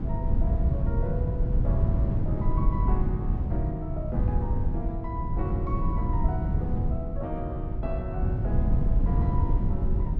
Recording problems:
wind on the microphone; below 120 Hz, SNR -8 dB

